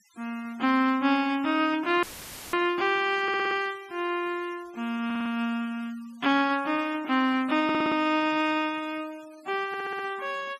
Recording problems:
denoising artefacts; signal-to-artefact ratio 25 dB
dropout; at 2 s for 0.5 s; filled with static
audio stuttering; 4 times, first at 3 s

